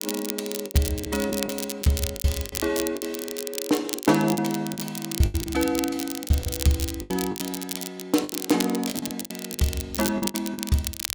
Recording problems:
crackle; vinyl, SNR 6 dB
lost packets; 13% of the sound replaced, filled with the last packet

